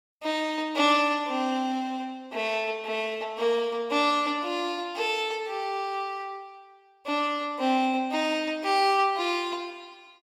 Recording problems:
none

